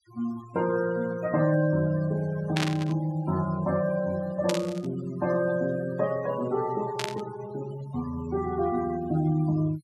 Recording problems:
noise reduction artefacts; signal-to-artefact ratio 16 dB
burst of static; at 2.5 s, at 4.5 s and at 7 s; peak +3 dB vs average level

